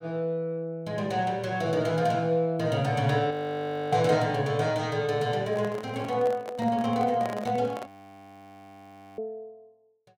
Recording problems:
audio freezing; at 3.5 s for 0.5 s and at 8 s for 1.5 s
microphone handling noise; from 5.5 to 8 s; peak -4 dB vs average level

